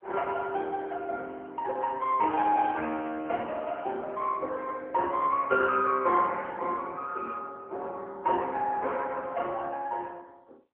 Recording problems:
phone line; 320 Hz to 3.6 kHz, AMR-NB

